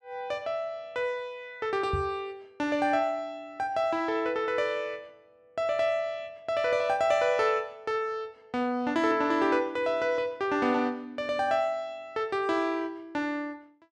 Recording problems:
microphone bump; at 2 s; peak +1 dB vs average level

